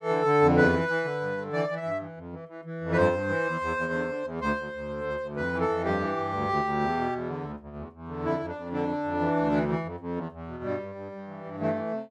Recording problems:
none

